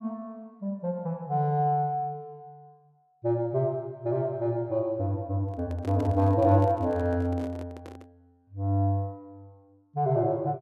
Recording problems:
handling noise; from 5.5 to 8 s; peak -9 dB vs average level

